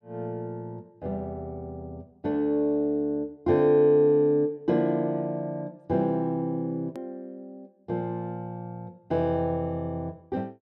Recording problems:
edit click; at 7 s

